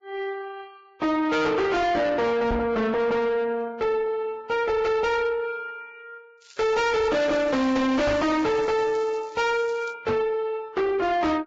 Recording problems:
lossy codec; Vorbis, log-spectral distance 3 dB, nothing above 7.3 kHz
distortion; soft clipping, signal-to-distortion ratio 7 dB
microphone thump; at 2.5 s, at 8 s and at 10 s; peak +1 dB vs average level
crackle; from 6.5 to 10 s; loose cable, SNR 25 dB

